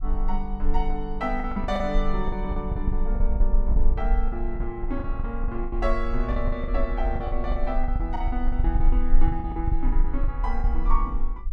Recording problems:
rumble; below 40 Hz, strongest tone 20 Hz, SNR -3 dB
lost packets; 15% of the sound replaced, filled with the last packet

